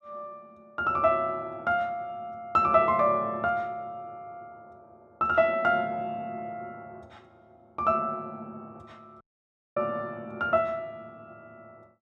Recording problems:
dropout; at 9 s for 0.5 s

